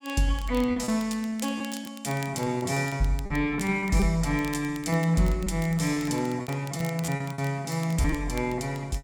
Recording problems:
crackling; vinyl, SNR 19 dB
lost packets; 8% of the sound replaced, filled with repeated pitch periods

